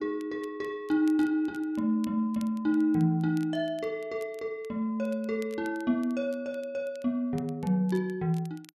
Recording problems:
crackling; vinyl, SNR 27 dB

